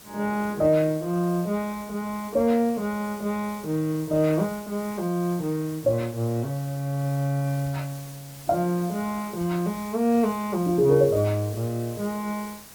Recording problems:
hiss; slope -1 dB per octave, SNR 18 dB

